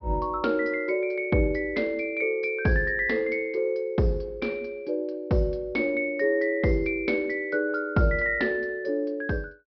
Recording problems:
treble cut off; nothing above 5.5 kHz

